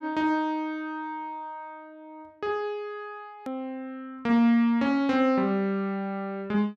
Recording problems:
edit click; at 3.5 s

